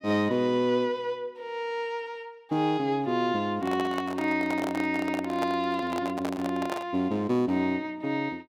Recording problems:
microphone handling noise; from 3.5 to 7 s; peak -1 dB vs average level

